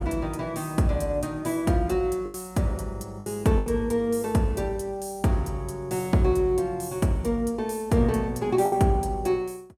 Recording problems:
lost packets; 3% of the sound replaced, filled with the last packet

